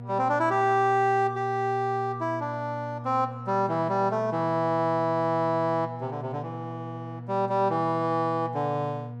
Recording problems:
hum; 60 Hz, harmonics up to 960 Hz, SNR 12 dB

